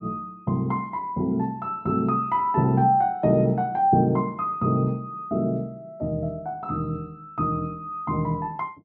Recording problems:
none

